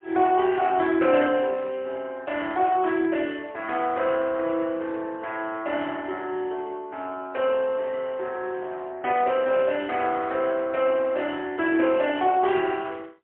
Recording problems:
phone line; 300 Hz to 3.4 kHz, AMR-NB, then MP3

